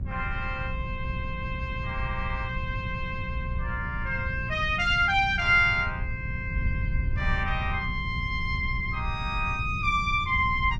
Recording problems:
electrical hum; 60 Hz, harmonics up to 600 Hz, SNR 12 dB
wind on the microphone; below 110 Hz, SNR 7 dB

